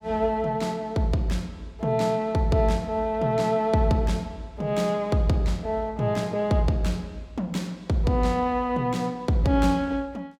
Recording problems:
none

